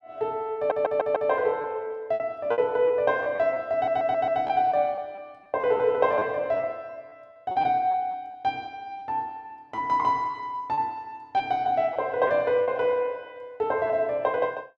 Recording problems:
lost packets; 6% of the sound replaced, filled with repeated pitch periods
audio stuttering; at 0.5 s and at 3.5 s

